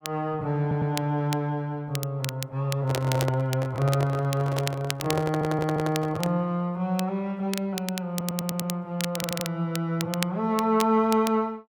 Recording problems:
crackling; vinyl, SNR 10 dB
stutter; 4 times, first at 0.5 s
handling noise; from 3 to 6.5 s; peak 0 dB vs average level

